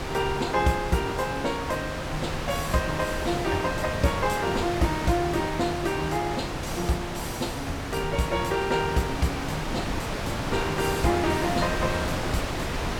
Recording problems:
wind on the microphone; below 1.8 kHz, SNR 3 dB

